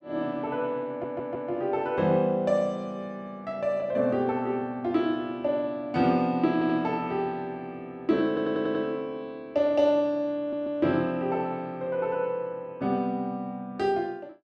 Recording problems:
stutter; 4 times, first at 1 s

